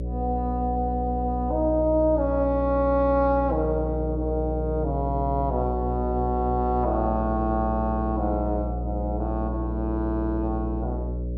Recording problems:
hum; 60 Hz, harmonics up to 600 Hz, SNR 4 dB

